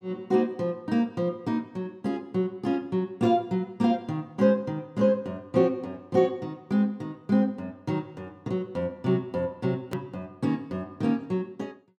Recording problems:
hard cut with a click; at 10 s

